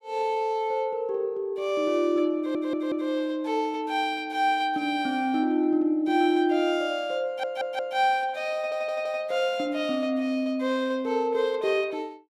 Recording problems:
audio stuttering; at 2.5 s, at 7.5 s and at 8.5 s

